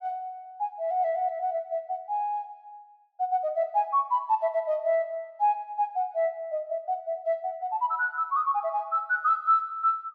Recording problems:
none

